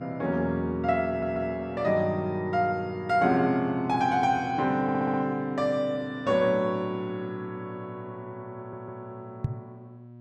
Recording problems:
hum; 60 Hz, harmonics up to 960 Hz, SNR 20 dB
stutter; at 1 s, at 5 s and at 8.5 s
knock on the microphone; at 9.5 s; peak +3 dB vs average level

